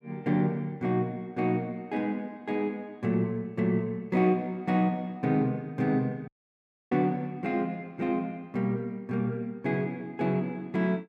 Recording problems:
audio cutting out; at 6.5 s for 0.5 s

